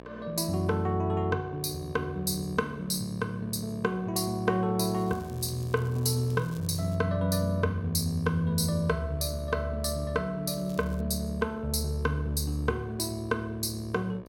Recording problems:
hum; 60 Hz, harmonics up to 1.9 kHz, SNR 17 dB
crackling; from 5 to 7 s and at 10 s; loose cable, SNR 24 dB

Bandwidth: 16.5 kHz